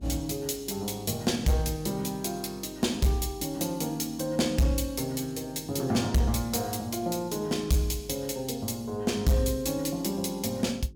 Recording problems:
distorted audio; hard clipping, signal-to-distortion ratio 12 dB
hum; 50 Hz, harmonics up to 400 Hz, SNR 23 dB

